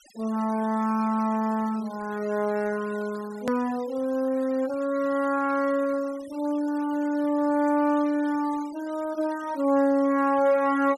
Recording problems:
noise reduction artefacts; signal-to-artefact ratio 22 dB
hard cut with a click; at 3.5 s

